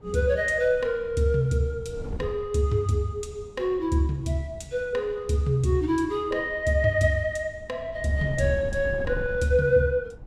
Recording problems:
wind on the microphone; below 150 Hz, SNR 16 dB

